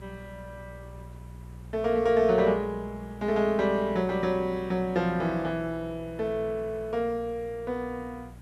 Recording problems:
hum; 60 Hz, harmonics up to 600 Hz, SNR 18 dB
hiss; slope -6 dB per octave, SNR 28 dB

